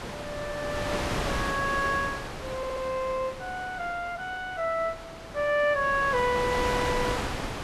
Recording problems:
wind on the microphone; below 2.1 kHz, SNR 5 dB
audio stuttering; at 2.5 s

